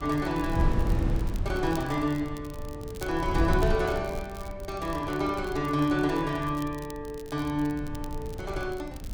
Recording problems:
wind on the microphone; below 120 Hz, SNR 5 dB
crackling; vinyl, SNR 20 dB

